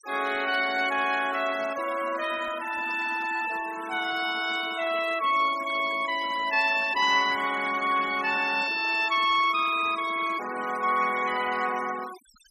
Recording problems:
denoising artefacts; signal-to-artefact ratio 16 dB

